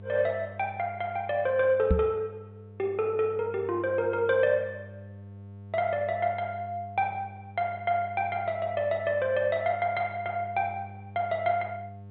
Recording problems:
low-pass filter; nothing above 4 kHz
mains hum; 50 Hz, harmonics up to 900 Hz, SNR 17 dB
microphone thump; at 2 s; peak +7 dB vs average level

